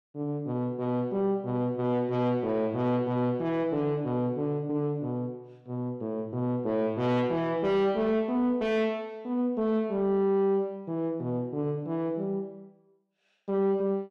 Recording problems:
distortion; soft clipping, signal-to-distortion ratio 11 dB

